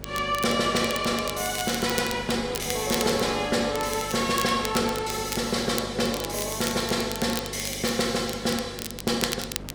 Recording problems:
electrical hum; 50 Hz, harmonics up to 600 Hz, SNR 16 dB
wind noise; below 890 Hz, SNR 21 dB
crackle; vinyl, SNR 10 dB

